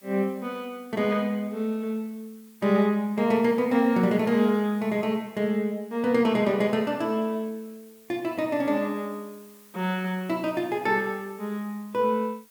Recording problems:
hiss; slope +1 dB per octave, SNR 27 dB

